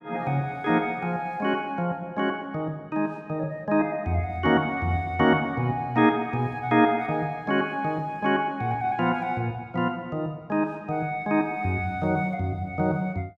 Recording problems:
none

